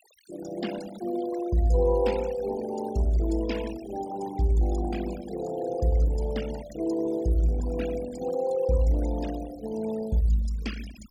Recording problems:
denoising artefacts; signal-to-artefact ratio 15 dB

